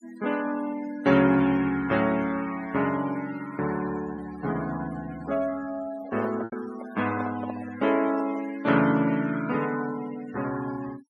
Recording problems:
noise reduction artefacts; signal-to-artefact ratio 16 dB
packet loss; 0.9% of the sound replaced, filled with repeated pitch periods
handling noise; from 6 to 8.5 s; peak -5 dB vs average level

